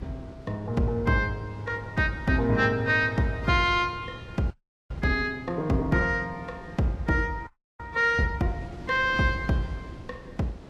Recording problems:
lossy compression; Vorbis, log-spectral distance 2 dB, nothing above 13.7 kHz
wind noise; below 410 Hz, SNR 19 dB
frozen audio; at 4.5 s and at 7.5 s

